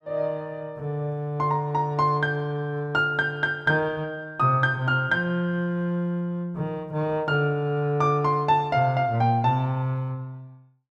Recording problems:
none

